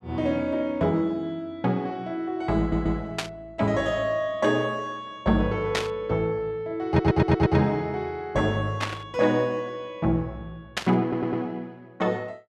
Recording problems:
audio stuttering; at 2.5 s, at 7 s and at 11 s
burst of static; 4 times, first at 3 s; peak +3 dB vs average level

